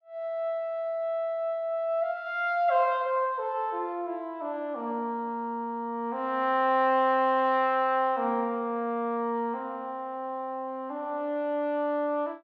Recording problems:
none

